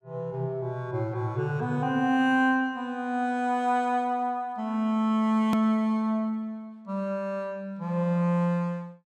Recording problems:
edit click; at 5.5 s

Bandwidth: 15 kHz